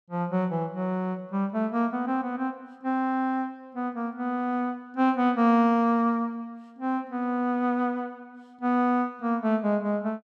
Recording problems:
none

